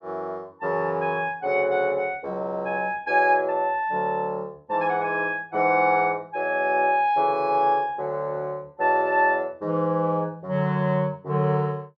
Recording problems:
none

